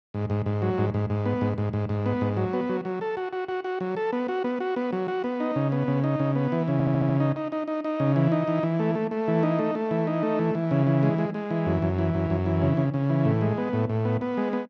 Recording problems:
stutter; at 6.5 s

